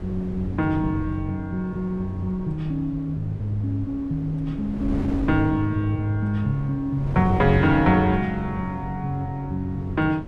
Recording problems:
wind on the microphone; below 250 Hz, SNR 10 dB

